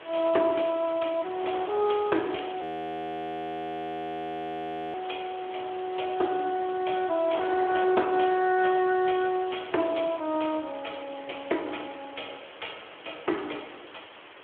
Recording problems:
phone line; 260 Hz to 3.4 kHz, Speex
background hiss; SNR 19 dB
wind on the microphone; below 1.3 kHz, SNR 16 dB
frozen audio; at 2.5 s for 2.5 s

